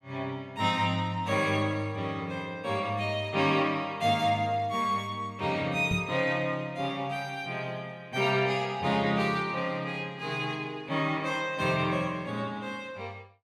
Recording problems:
microphone thump; at 6 s; peak +1 dB vs average level

